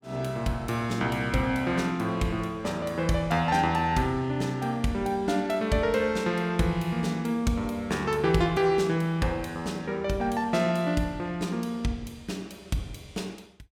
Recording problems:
none

